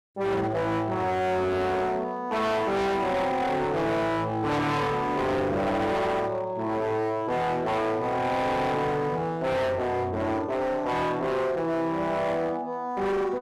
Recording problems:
distorted audio; hard clipping, signal-to-distortion ratio 7 dB

